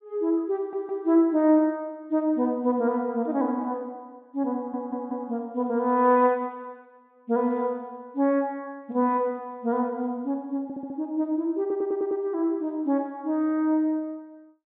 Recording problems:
treble cut off; nothing above 4 kHz
audio stuttering; 4 times, first at 0.5 s

